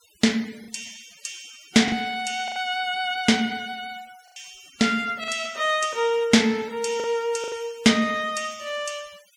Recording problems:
noise reduction artefacts; signal-to-artefact ratio 23 dB
packet loss; 5% of the sound replaced, filled with the last packet

